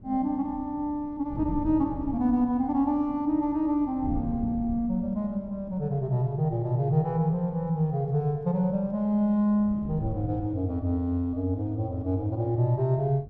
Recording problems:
wind noise; below 180 Hz, SNR 15 dB

